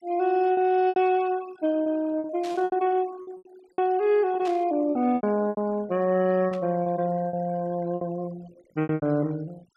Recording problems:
noise reduction artefacts; signal-to-artefact ratio 24 dB
packet loss; 12% of the sound replaced, filled with repeated pitch periods
static burst; at 2.5 s, at 4.5 s and at 6.5 s; peak -12 dB vs average level

